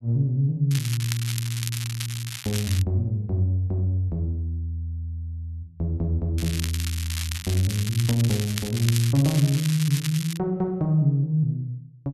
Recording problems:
crackling; from 0.5 to 3 s and from 6.5 to 10 s; loose cable, SNR 8 dB

